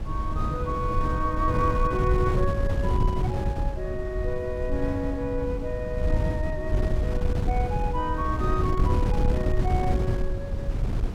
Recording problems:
wind noise; below 120 Hz, SNR -2 dB

